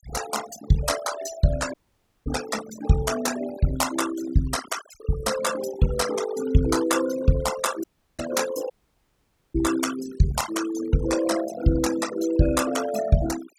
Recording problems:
denoising artefacts; signal-to-artefact ratio 9 dB
dropout; at 1.5 s for 0.5 s, at 8 s and at 8.5 s for 1 s

